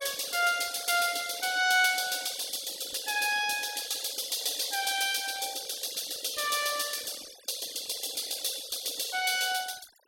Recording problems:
denoising artefacts; signal-to-artefact ratio 16 dB

